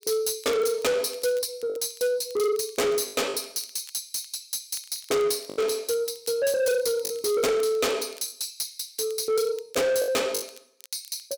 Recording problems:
distorted audio; soft clipping, signal-to-distortion ratio 7 dB
crackle; vinyl, SNR 24 dB
packet loss; 5% of the sound replaced, filled with the last packet

